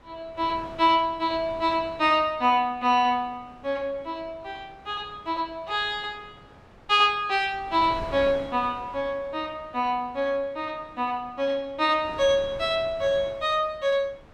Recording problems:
wind on the microphone; below 980 Hz, SNR 21 dB

